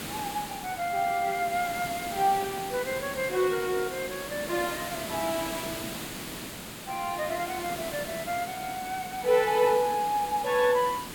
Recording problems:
background hiss; slope -3 dB per octave, SNR 8 dB

